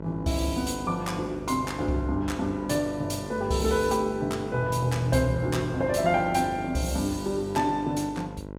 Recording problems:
mains hum; 50 Hz, harmonics up to 1.6 kHz, SNR 12 dB

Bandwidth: 17 kHz